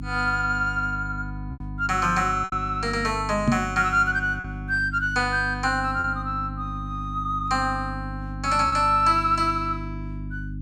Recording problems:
hum; 50 Hz, harmonics up to 300 Hz, SNR 10 dB
lost packets; 2% of the sound replaced, filled with repeated pitch periods
microphone bump; at 3.5 s; peak +5 dB vs average level

